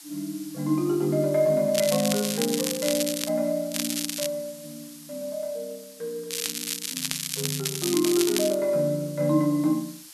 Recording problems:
background hiss; slope +4 dB per octave, SNR 18 dB
crackle; from 2 to 3.5 s, at 3.5 s and from 6.5 to 8.5 s; loose cable, SNR 3 dB

